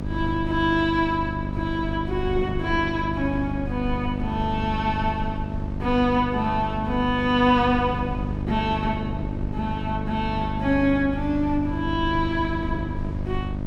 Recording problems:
hum; 50 Hz, harmonics up to 950 Hz, SNR 6 dB
low-frequency rumble; below 78 Hz, strongest tone 26 Hz, SNR 11 dB
wind on the microphone; below 300 Hz, SNR 17 dB

